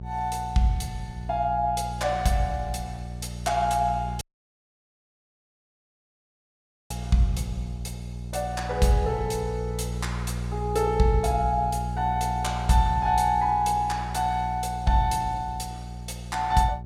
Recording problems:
electrical hum; 60 Hz, harmonics up to 600 Hz, SNR 8 dB
dropout; at 4 s for 2.5 s

